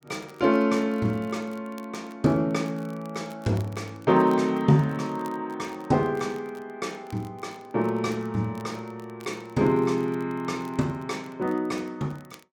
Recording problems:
crackling; vinyl, SNR 28 dB

